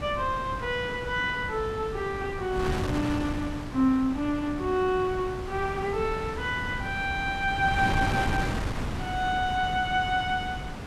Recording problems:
wind on the microphone; below 690 Hz, SNR 6 dB

